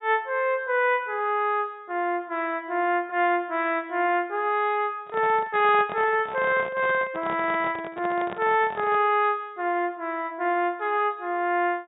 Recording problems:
treble cut off; nothing above 4 kHz
handling noise; from 5 to 9 s; peak -7 dB vs average level

